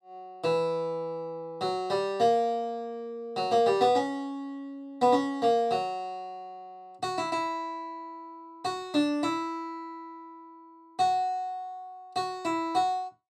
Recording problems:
none

